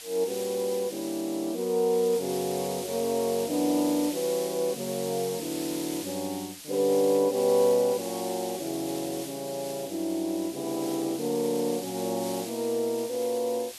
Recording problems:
background hiss; slope +3 dB per octave, SNR 10 dB

